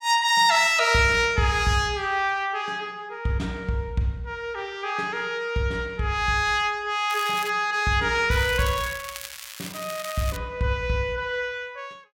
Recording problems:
crackling; at 7 s and from 8.5 to 10 s; loose cable, SNR 13 dB

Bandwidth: 16.5 kHz